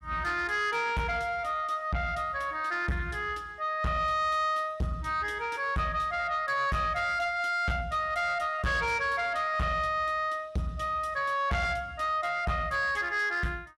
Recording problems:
distortion; soft clipping, signal-to-distortion ratio 11 dB

